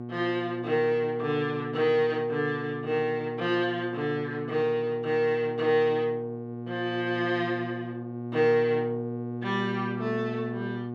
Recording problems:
hum; 60 Hz, harmonics up to 1.1 kHz, SNR 9 dB

